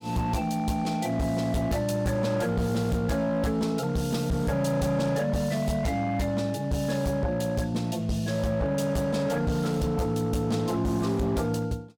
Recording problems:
distortion; hard clipping, signal-to-distortion ratio 10 dB

